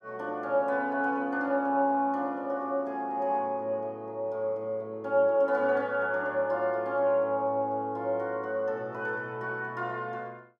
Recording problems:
none

